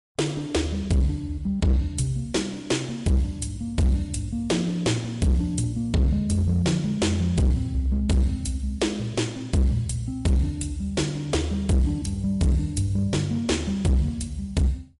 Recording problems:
codec artefacts; MP3, log-spectral distance 2 dB, nothing above 11 kHz
distortion; hard clipping, uneven, signal-to-distortion ratio 7 dB

